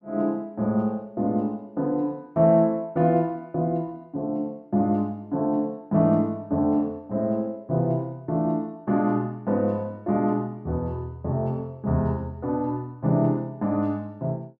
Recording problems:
none

